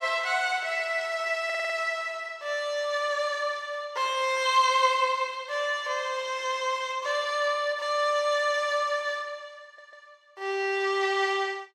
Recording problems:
stutter; at 1.5 s and at 9.5 s

